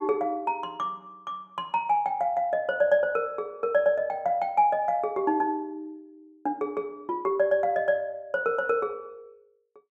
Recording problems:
none

